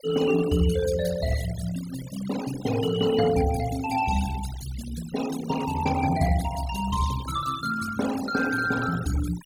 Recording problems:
noise reduction artefacts; signal-to-artefact ratio 12 dB

